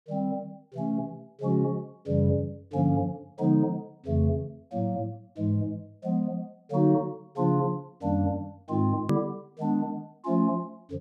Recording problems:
hard cut with a click; at 9 s

